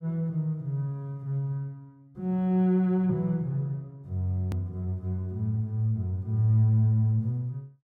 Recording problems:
click at an edit; at 4.5 s

